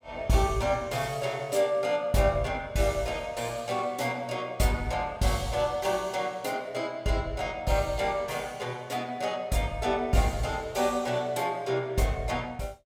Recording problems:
none

